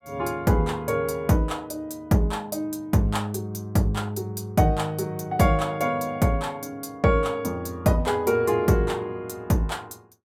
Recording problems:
none

